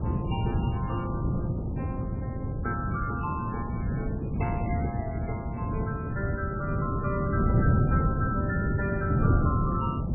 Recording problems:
lossy codec; MP3, log-spectral distance 2 dB, nothing above 2.4 kHz
wind on the microphone; below 210 Hz, SNR -5 dB

